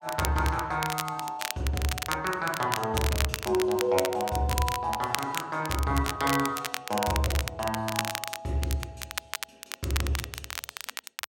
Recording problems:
crackling; vinyl, SNR 5 dB

